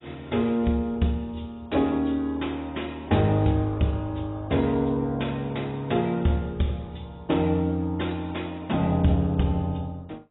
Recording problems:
codec artefacts; AAC, log-spectral distance 4 dB, nothing above 3.8 kHz

